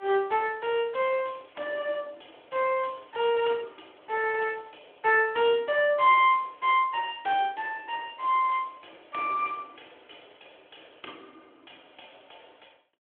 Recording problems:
phone line; 280 Hz to 3.4 kHz, Speex

